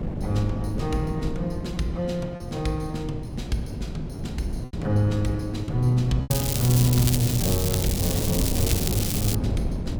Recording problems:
wind noise; below 230 Hz, SNR 4 dB
packet loss; 3% of the sound replaced, filled with repeated pitch periods
crackle; from 6.5 to 9.5 s; loose cable, SNR 1 dB

